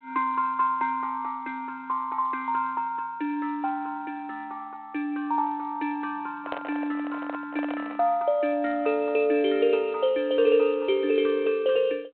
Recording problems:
telephone audio; 260 Hz to 3.5 kHz, G.726
handling noise; from 6.5 to 8 s; peak -2 dB vs average level

